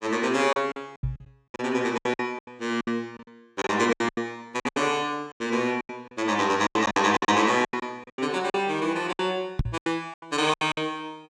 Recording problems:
packet loss; 17% of the sound replaced, filled with silence
knock on the microphone; at 1 s and at 9.5 s; peak +4 dB vs average level

